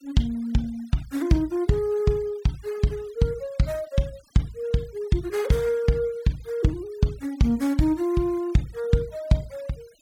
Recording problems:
noise reduction artefacts; signal-to-artefact ratio 25 dB

